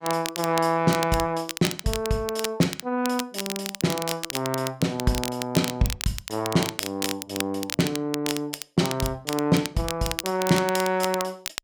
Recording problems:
crackle; vinyl, SNR 7 dB

